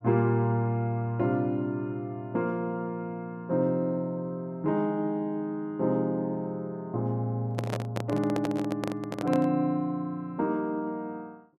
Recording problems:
handling noise; from 7.5 to 9.5 s; peak +1 dB vs average level

